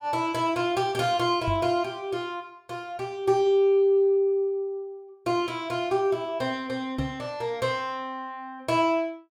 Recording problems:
microphone thump; at 1.5 s and at 7 s; peak -1 dB vs average level

